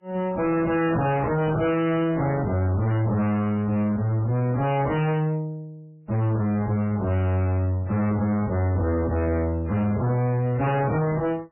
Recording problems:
lossy compression; MP3, then AAC, log-spectral distance 2 dB, nothing above 2.5 kHz
distortion; hard clipping, uneven, signal-to-distortion ratio 6 dB

